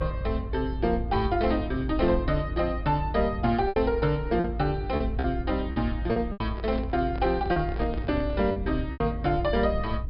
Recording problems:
treble missing; nothing above 5.5 kHz
low-frequency rumble; below 78 Hz, strongest tone 54 Hz, SNR 6 dB
lost packets; 5% of the sound replaced, filled with repeated pitch periods
handling noise; from 6.5 to 8.5 s; peak -7 dB vs average level

